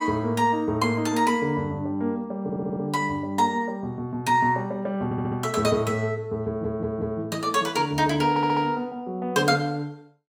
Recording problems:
stutter; 4 times, first at 2.5 s

